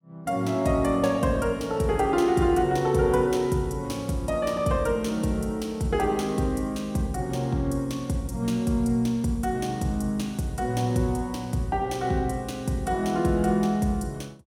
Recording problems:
none

